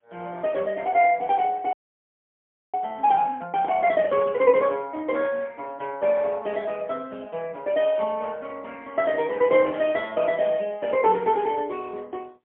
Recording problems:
phone line; 280 Hz to 3.3 kHz, AMR-NB, then MP3
audio freezing; at 1.5 s for 1 s

